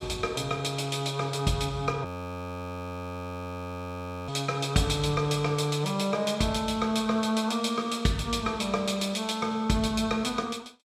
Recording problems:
audio freezing; at 2 s for 2 s

